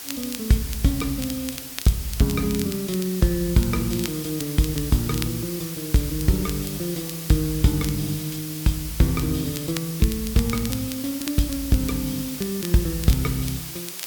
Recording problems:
hiss; slope 0 dB per octave, SNR 8 dB
crackle; vinyl, SNR 14 dB

